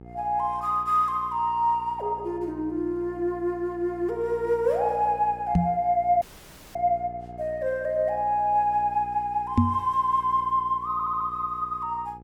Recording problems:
hum; 60 Hz, harmonics up to 960 Hz, SNR 20 dB
microphone bump; at 5.5 s and at 9.5 s; peak +8 dB vs average level
audio cutting out; at 6 s for 0.5 s
stutter; at 11 s

